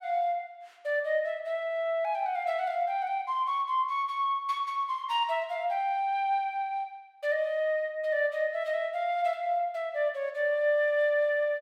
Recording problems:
none

